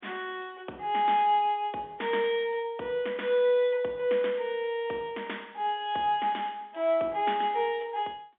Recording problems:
telephone audio; 240 Hz to 3.6 kHz, G.711

